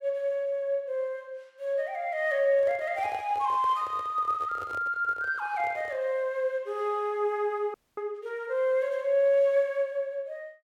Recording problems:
microphone handling noise; from 2.5 to 6 s; peak -12 dB vs average level
frozen audio; at 7.5 s

